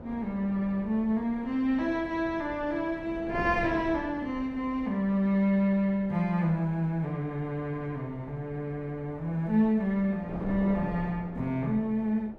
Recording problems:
wind noise; below 510 Hz, SNR 15 dB

